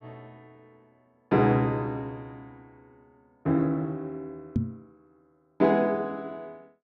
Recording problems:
knock on the microphone; at 4.5 s; peak +4 dB vs average level

